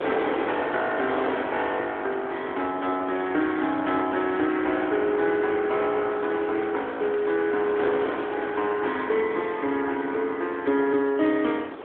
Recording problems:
phone line; 240 Hz to 3.6 kHz, AMR-NB
wind on the microphone; below 1.1 kHz, SNR 10 dB

